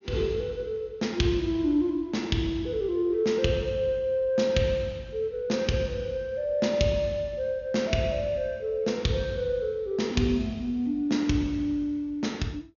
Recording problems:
treble missing; nothing above 6.7 kHz

